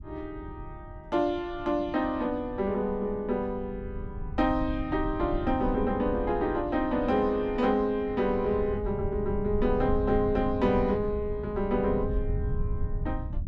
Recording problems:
rumble; below 98 Hz, SNR 9 dB

